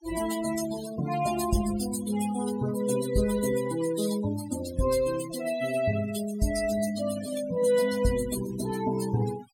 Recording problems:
denoising artefacts; signal-to-artefact ratio 11 dB

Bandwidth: 16.5 kHz